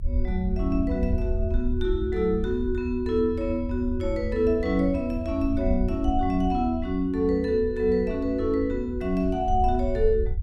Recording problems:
low-frequency rumble; below 80 Hz, SNR 7 dB

